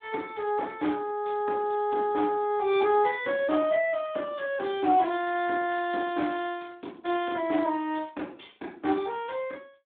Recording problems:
telephone audio; 240 Hz to 3.6 kHz, Speex

